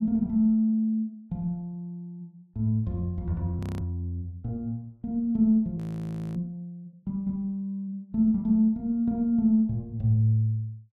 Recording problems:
audio freezing; at 3.5 s and at 6 s for 0.5 s

